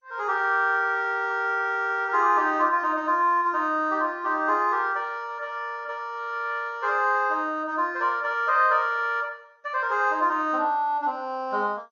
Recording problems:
lossy compression; MP2, log-spectral distance 2 dB, nothing above 6.2 kHz

